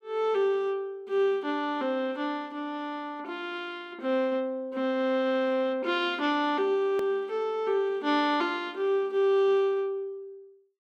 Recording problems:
click at an edit; at 7 s

